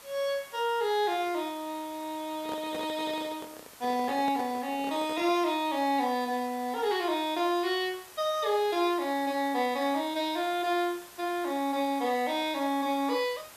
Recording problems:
hiss; slope -1 dB per octave, SNR 19 dB
microphone handling noise; from 2.5 to 5.5 s; peak -6 dB vs average level

